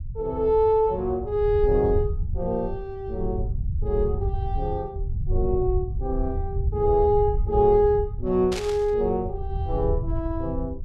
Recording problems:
low-frequency rumble; below 90 Hz, SNR 6 dB
static burst; at 8.5 s; peak -4 dB vs average level

